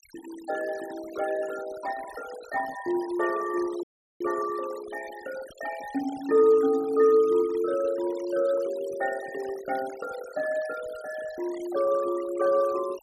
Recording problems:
noise reduction artefacts; signal-to-artefact ratio 18 dB
dropout; at 4 s

